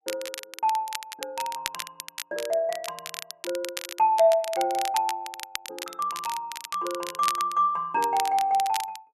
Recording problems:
crackle; vinyl, SNR 10 dB

